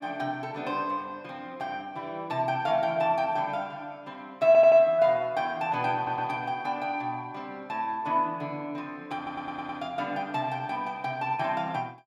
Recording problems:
audio stuttering; at 4.5 s, at 6 s and at 9 s

